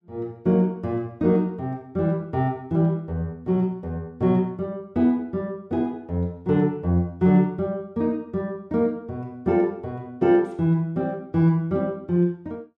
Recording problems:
none

